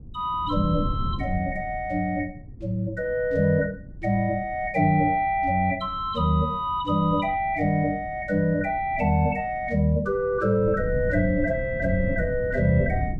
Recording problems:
wind noise; below 150 Hz, SNR 12 dB

